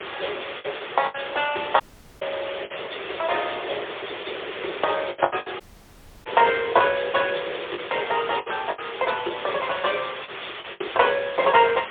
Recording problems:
telephone audio; 320 Hz to 3.5 kHz, AMR-NB, then MP3
hiss; SNR 10 dB
wind noise; below 600 Hz, SNR 14 dB
packet loss; 9% of the sound replaced, filled with the last packet
audio cutting out; at 2 s and at 5.5 s for 0.5 s

